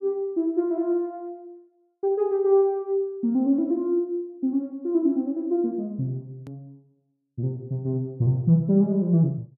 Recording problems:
click at an edit; at 6.5 s

